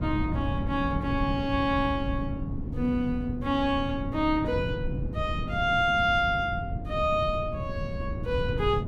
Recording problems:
wind on the microphone; below 180 Hz, SNR 5 dB

